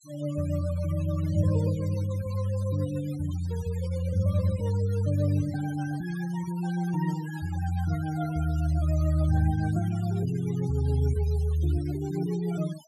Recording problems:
noise reduction artefacts; signal-to-artefact ratio 20 dB

